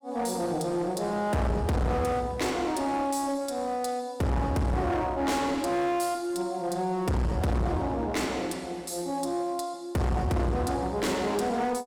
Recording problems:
distortion; hard clipping, uneven, signal-to-distortion ratio 5 dB

